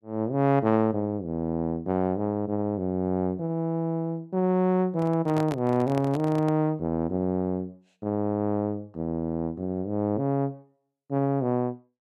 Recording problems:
microphone handling noise; from 5 to 6.5 s; peak -4 dB vs average level

